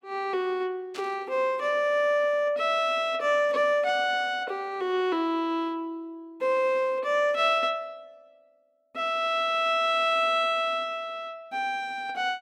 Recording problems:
burst of static; at 1 s; peak -11 dB vs average level

